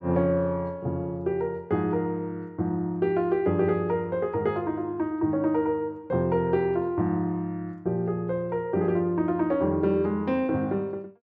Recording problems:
none

